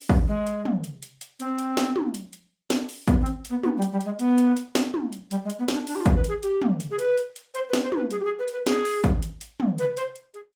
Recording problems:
lossy compression; Opus, log-spectral distance 3 dB, nothing above 19 kHz

